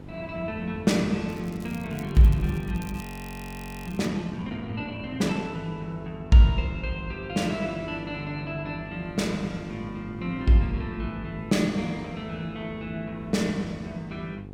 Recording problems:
hum; 50 Hz, harmonics up to 900 Hz, SNR 14 dB
wind on the microphone; below 440 Hz, SNR 24 dB
crackling; from 1.5 to 4 s; loose cable, SNR 21 dB
audio freezing; at 3 s for 1 s

